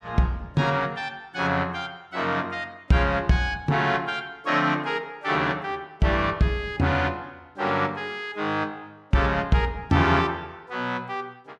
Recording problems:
none

